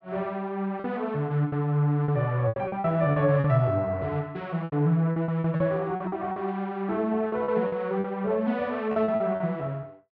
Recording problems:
lost packets; 11% of the sound replaced, filled with repeated pitch periods

